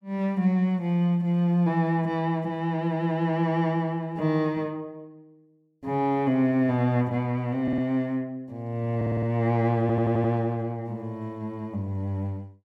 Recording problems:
stutter; at 7.5 s, at 9 s and at 10 s

